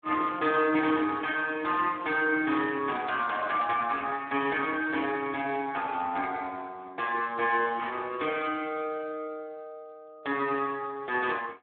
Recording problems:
telephone audio; 240 Hz to 3.4 kHz, Speex

